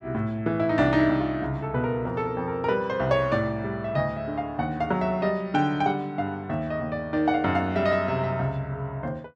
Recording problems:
none

